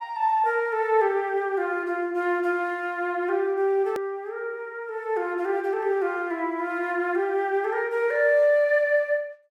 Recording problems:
hard cut with a click; at 4 s

